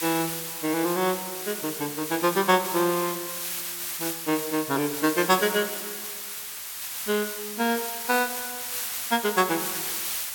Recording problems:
hiss; slope +3 dB per octave, SNR 4 dB

